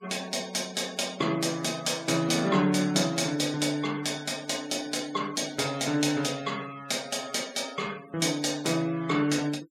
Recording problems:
denoising artefacts; signal-to-artefact ratio 20 dB

